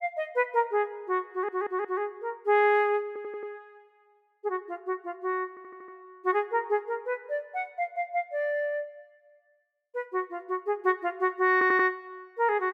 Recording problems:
audio stuttering; 4 times, first at 1.5 s

